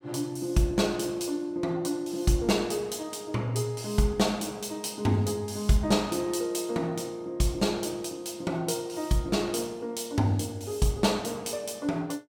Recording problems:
none

